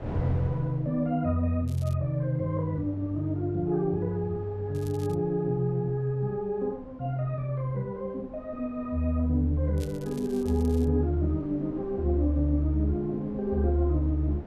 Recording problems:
wind noise; below 420 Hz, SNR 17 dB
crackle; at 1.5 s, at 4.5 s and from 10 to 11 s; loose cable, SNR 24 dB

